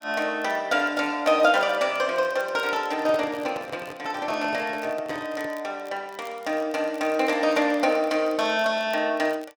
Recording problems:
crackling; vinyl, SNR 27 dB
handling noise; from 3 to 5.5 s; peak -8 dB vs average level

